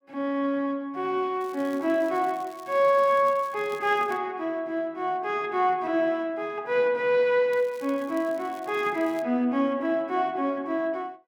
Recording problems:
crackling; from 1.5 to 4 s and from 7.5 to 9 s; loose cable, SNR 26 dB

